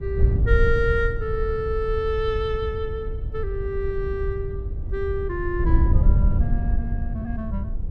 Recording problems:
wind on the microphone; below 82 Hz, SNR -2 dB

